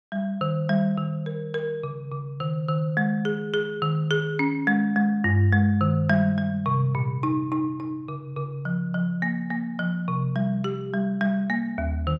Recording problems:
none

